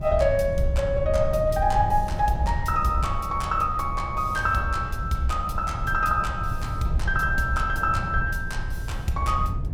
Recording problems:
wind noise; below 100 Hz, SNR 6 dB

